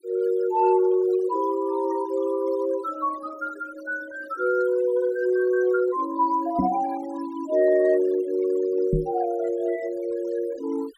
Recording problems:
denoising artefacts; signal-to-artefact ratio 20 dB
knock on the microphone; at 6.5 s and at 9 s; peak +4 dB vs average level

